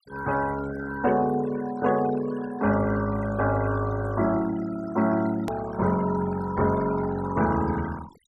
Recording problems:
denoising artefacts; signal-to-artefact ratio 16 dB
click at an edit; at 5.5 s

